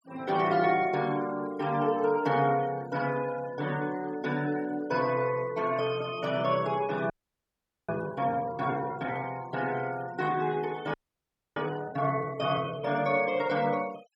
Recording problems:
denoising artefacts; signal-to-artefact ratio 20 dB
audio freezing; at 7 s for 1 s and at 11 s for 0.5 s

